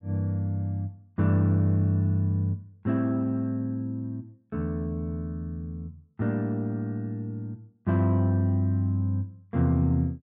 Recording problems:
none

